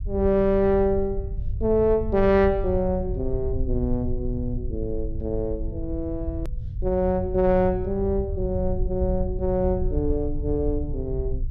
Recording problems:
rumble; below 84 Hz, SNR 7 dB
click at an edit; at 6.5 s

